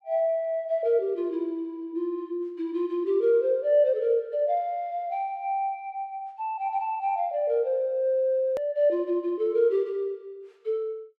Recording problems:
edit click; at 8.5 s

